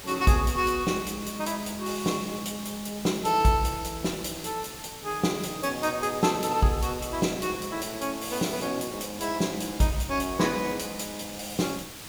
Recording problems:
background hiss; slope -1 dB per octave, SNR 12 dB

